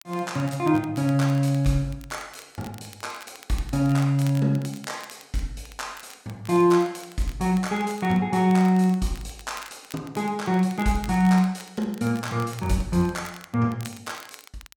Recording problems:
crackle; vinyl, SNR 22 dB

